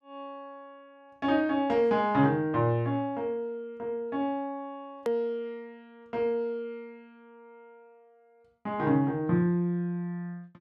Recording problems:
click at an edit; at 5 s

